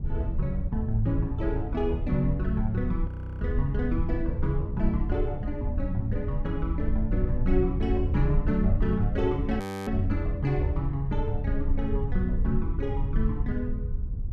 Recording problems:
rumble; below 78 Hz, SNR 1 dB
audio freezing; at 3 s and at 9.5 s

